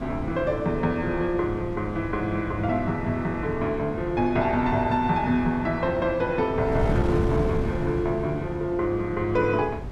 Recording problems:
wind noise; below 240 Hz, SNR 8 dB

